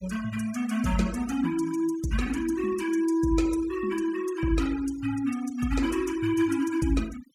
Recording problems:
noise reduction artefacts; signal-to-artefact ratio 17 dB

